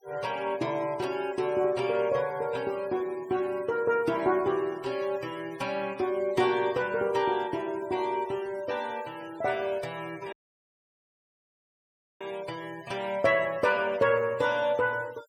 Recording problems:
denoising artefacts; signal-to-artefact ratio 22 dB
audio cutting out; at 10 s for 2 s

